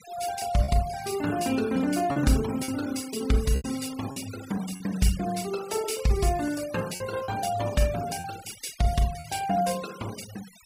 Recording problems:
denoising artefacts; signal-to-artefact ratio 15 dB
lost packets; 4% of the sound replaced, filled with repeated pitch periods

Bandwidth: 15.5 kHz